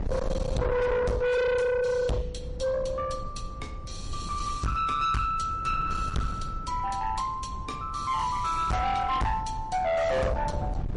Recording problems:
lossy codec; MP3, log-spectral distance 2 dB, nothing above 10.4 kHz
distortion; soft clipping, signal-to-distortion ratio 6 dB
wind noise; below 310 Hz, SNR 9 dB

